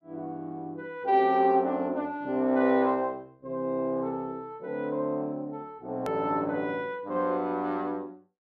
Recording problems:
edit click; at 6 s

